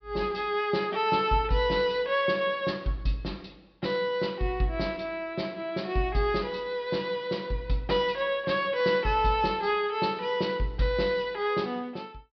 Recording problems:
low-pass filter; nothing above 5.5 kHz

